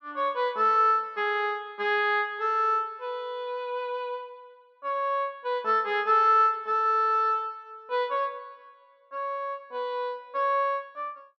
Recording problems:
none

